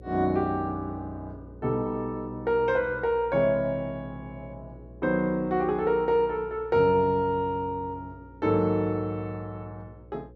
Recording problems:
electrical hum; 60 Hz, harmonics up to 540 Hz, SNR 21 dB

